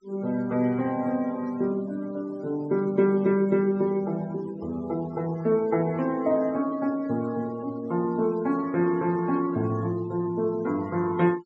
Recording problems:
treble cut off; nothing above 8 kHz
noise reduction artefacts; signal-to-artefact ratio 23 dB

